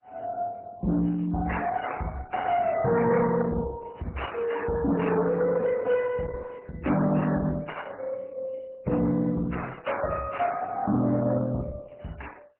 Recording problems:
lossy codec; MP3, then Opus, log-spectral distance 4 dB
distortion; hard clipping, uneven, signal-to-distortion ratio 11 dB

